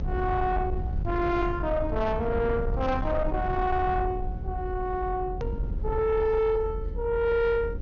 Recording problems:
treble missing; nothing above 6.7 kHz
distortion; soft clipping, signal-to-distortion ratio 12 dB
hum; 60 Hz, harmonics up to 540 Hz, SNR 19 dB
rumble; below 98 Hz, SNR 6 dB
edit click; at 5.5 s

